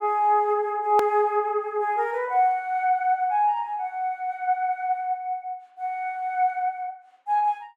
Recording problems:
click at an edit; at 1 s

